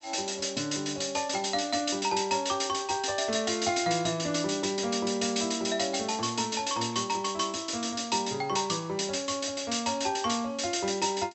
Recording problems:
low-pass filter; nothing above 7.9 kHz

